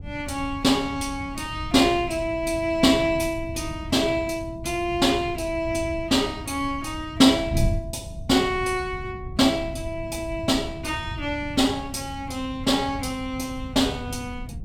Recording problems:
wind noise; below 130 Hz, SNR 12 dB

